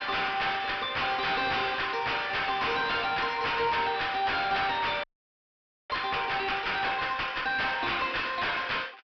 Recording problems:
low-pass filter; nothing above 5.5 kHz
distortion; soft clipping, signal-to-distortion ratio 6 dB
audio freezing; at 5 s for 1 s

